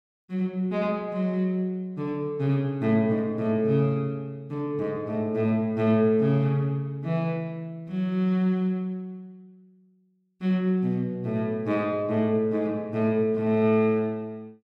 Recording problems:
none

